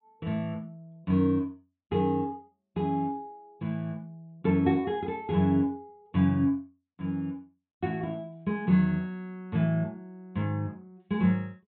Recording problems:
treble missing; nothing above 4 kHz

